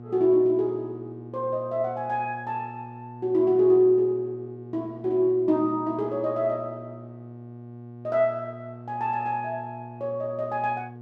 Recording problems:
hum; 60 Hz, harmonics up to 840 Hz, SNR 16 dB

